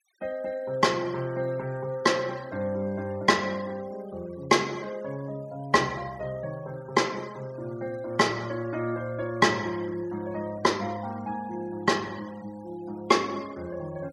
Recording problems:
noise reduction artefacts; signal-to-artefact ratio 23 dB

